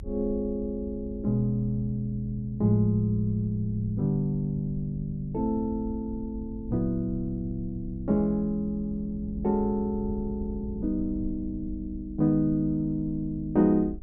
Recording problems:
low-frequency rumble; below 86 Hz, SNR 13 dB

